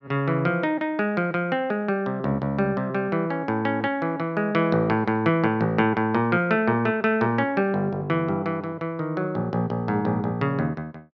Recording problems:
none

